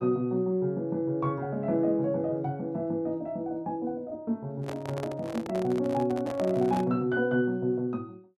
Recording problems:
microphone handling noise; from 4.5 to 7 s; peak -4 dB vs average level

